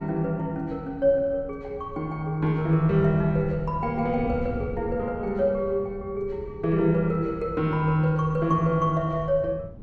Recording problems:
wind on the microphone; below 170 Hz, SNR 15 dB

